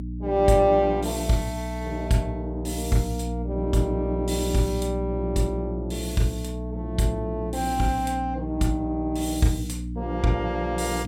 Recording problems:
electrical hum; 60 Hz, harmonics up to 300 Hz, SNR 6 dB

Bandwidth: 16 kHz